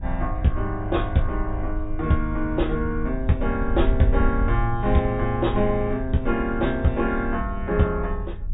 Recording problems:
low-pass filter; nothing above 4 kHz
wind on the microphone; below 60 Hz, SNR 6 dB

